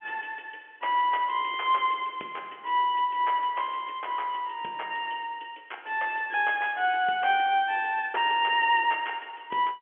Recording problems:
phone line; 280 Hz to 3.3 kHz, G.711

